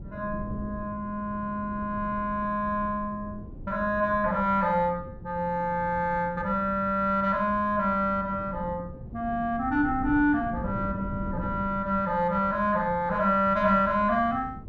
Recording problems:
wind on the microphone; below 210 Hz, SNR 14 dB

